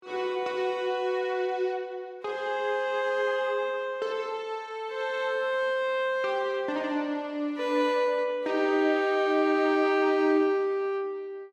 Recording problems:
none

